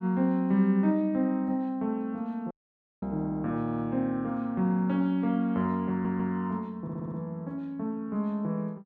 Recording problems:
audio cutting out; at 2.5 s for 0.5 s
stutter; at 3.5 s, at 6 s and at 7 s

